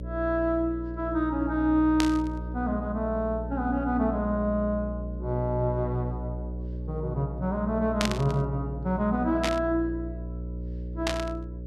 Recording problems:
hum; 60 Hz, harmonics up to 600 Hz, SNR 7 dB
static burst; 4 times, first at 2 s; peak +4 dB vs average level

